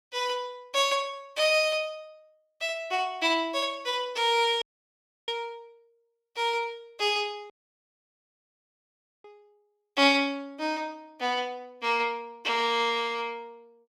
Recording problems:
audio cutting out; at 4.5 s for 0.5 s and at 7.5 s for 1.5 s

